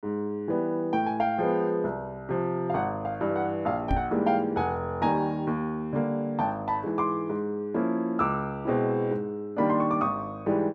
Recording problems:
microphone bump; at 4 s; peak +3 dB vs average level

